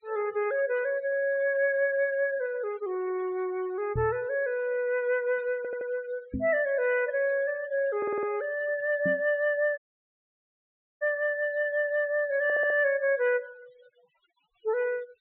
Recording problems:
treble cut off; nothing above 4 kHz
noise reduction artefacts; signal-to-artefact ratio 24 dB
microphone thump; at 4 s, at 6.5 s and at 9 s; peak -1 dB vs average level
audio stuttering; at 5.5 s, at 8 s and at 12 s
audio cutting out; at 10 s for 1 s

